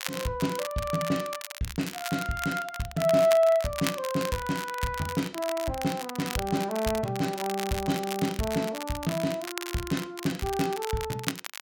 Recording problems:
crackle; vinyl, SNR 9 dB

